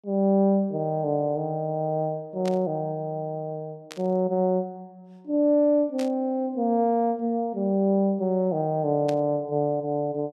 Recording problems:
burst of static; 4 times, first at 2.5 s; peak -10 dB vs average level

